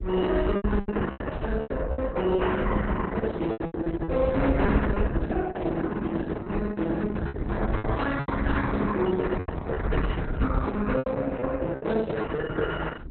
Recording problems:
lossy codec; MP2, then Opus, log-spectral distance 3 dB, nothing above 4.1 kHz
rumble; below 78 Hz, SNR 5 dB
lost packets; 9% of the sound replaced, filled with repeated pitch periods
handling noise; from 7 to 11 s; peak 0 dB vs average level

